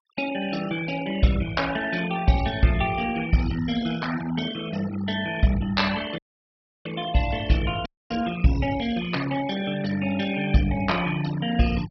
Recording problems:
low-pass filter; nothing above 5.5 kHz
noise reduction artefacts; signal-to-artefact ratio 13 dB
audio cutting out; at 6 s for 0.5 s and at 8 s

